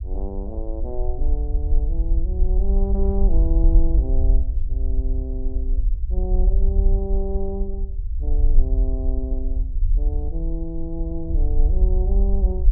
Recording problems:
low-frequency rumble; below 52 Hz, SNR -9 dB

